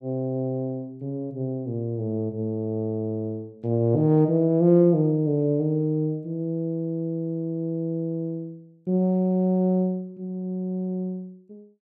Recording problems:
none

